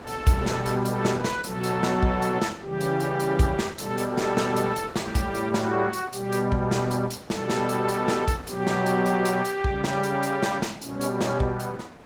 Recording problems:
codec artefacts; Opus, log-spectral distance 4 dB, nothing above 19 kHz
wind noise; below 1 kHz, SNR 18 dB

